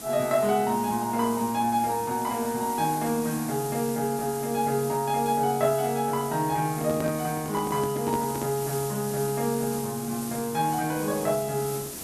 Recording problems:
background hiss; SNR 10 dB
handling noise; from 6.5 to 8.5 s; peak -2 dB vs average level

